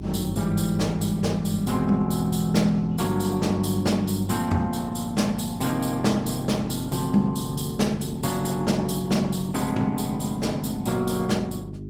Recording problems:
lossy compression; Opus, log-spectral distance 5 dB
hum; 50 Hz, harmonics up to 400 Hz, SNR 11 dB

